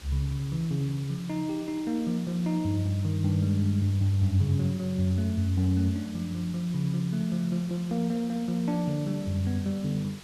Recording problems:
background hiss; SNR 19 dB

